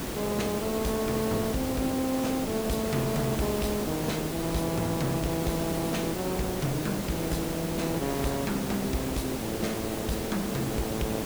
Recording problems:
distorted audio; hard clipping, uneven, signal-to-distortion ratio 10 dB
hiss; slope -6 dB per octave, SNR 2 dB

